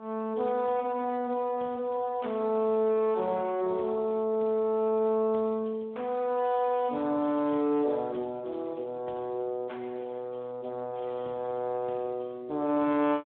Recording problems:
telephone audio; 170 Hz to 3.1 kHz, Speex

